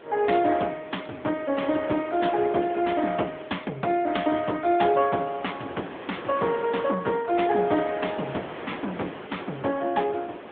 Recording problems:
telephone audio; 240 Hz to 3.5 kHz, AMR-NB
wind on the microphone; below 1.5 kHz, SNR 14 dB

